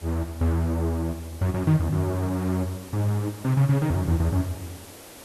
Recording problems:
hiss; slope -4 dB per octave, SNR 19 dB

